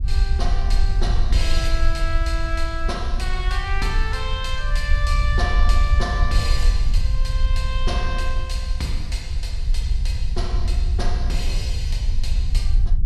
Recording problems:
low-frequency rumble; below 58 Hz, SNR -5 dB

